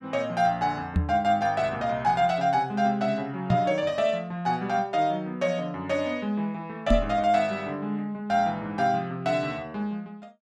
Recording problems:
knock on the microphone; at 1 s, at 3.5 s and at 7 s; peak +6 dB vs average level

